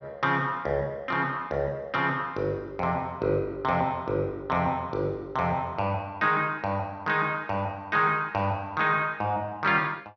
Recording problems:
low-pass filter; nothing above 6 kHz

